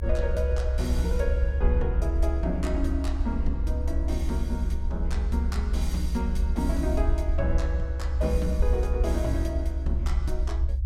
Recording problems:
rumble; below 68 Hz, SNR -4 dB

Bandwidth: 16.5 kHz